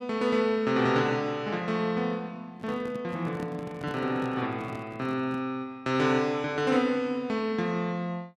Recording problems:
microphone handling noise; from 2.5 to 5.5 s; peak -7 dB vs average level

